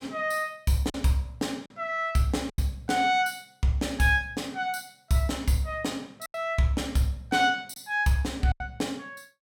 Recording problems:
lost packets; 4% of the sound replaced, filled with silence

